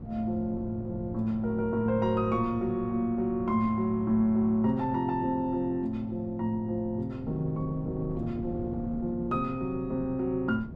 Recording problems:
wind on the microphone; below 270 Hz, SNR 14 dB

